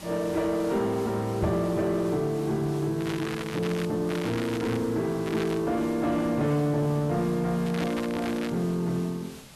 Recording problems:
distorted audio; soft clipping, signal-to-distortion ratio 8 dB
background hiss; slope -2 dB per octave, SNR 18 dB
microphone thump; at 1.5 s; peak +2 dB vs average level
crackling; 4 times, first at 3 s; loose cable, SNR 12 dB

